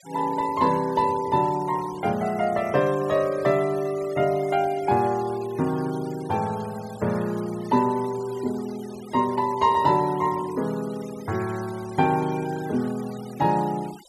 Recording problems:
denoising artefacts; signal-to-artefact ratio 20 dB

